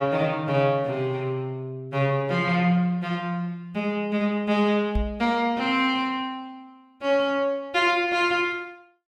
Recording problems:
microphone thump; at 5 s; peak +1 dB vs average level

